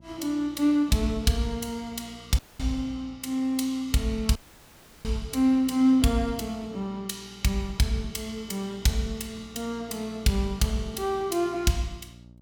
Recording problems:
electrical hum; 60 Hz, harmonics up to 660 Hz, SNR 23 dB
audio cutting out; at 2.5 s and at 4.5 s for 0.5 s

